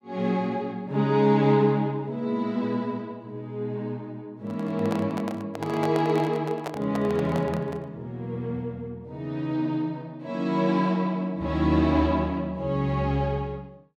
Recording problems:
microphone handling noise; from 4.5 to 8 s; peak -2 dB vs average level

